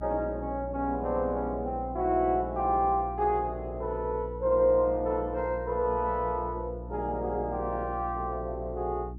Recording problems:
hum; 60 Hz, harmonics up to 360 Hz, SNR 12 dB

